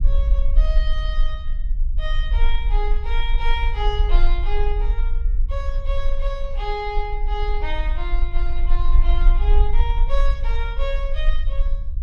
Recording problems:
rumble; below 38 Hz, strongest tone 20 Hz, SNR -7 dB

